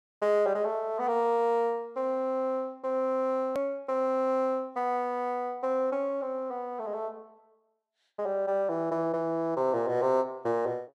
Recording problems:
edit click; at 3.5 s

